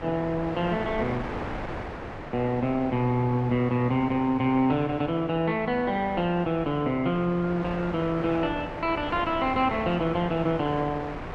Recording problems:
wind noise; below 1.2 kHz, SNR 11 dB

